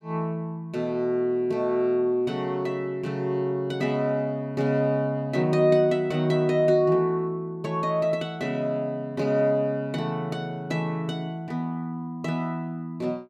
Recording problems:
none

